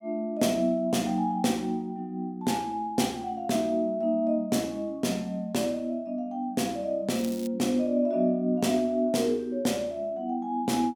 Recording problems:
crackle; at 7 s; loose cable, SNR 17 dB

